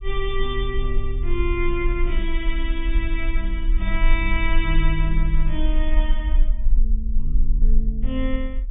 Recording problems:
low-pass filter; nothing above 3.6 kHz
low-frequency rumble; below 38 Hz, strongest tone 22 Hz, SNR -3 dB

